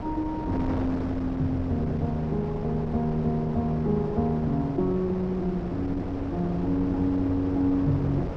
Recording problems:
wind noise; below 490 Hz, SNR 7 dB

